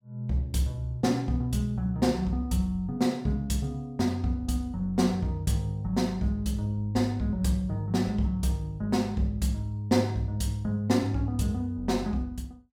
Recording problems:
none

